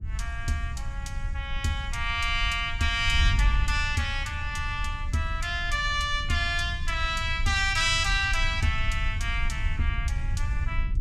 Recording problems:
wind noise; below 74 Hz, SNR 5 dB

